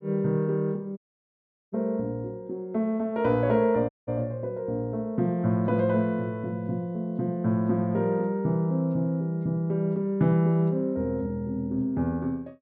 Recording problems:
dropout; at 1 s for 1 s and at 4 s

